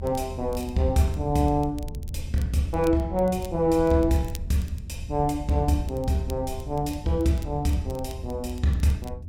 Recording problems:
rumble; below 84 Hz, SNR 11 dB
crackle; vinyl, SNR 25 dB

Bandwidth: 16.5 kHz